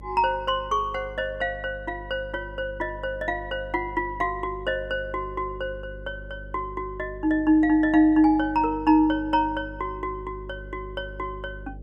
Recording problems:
electrical hum; 50 Hz, harmonics up to 550 Hz, SNR 17 dB

